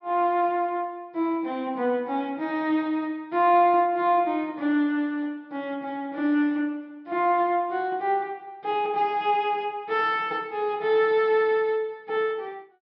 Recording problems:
low-pass filter; nothing above 5.5 kHz

